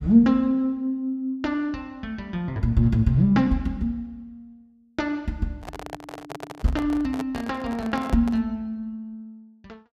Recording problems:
handling noise; from 5.5 to 8.5 s; peak -5 dB vs average level

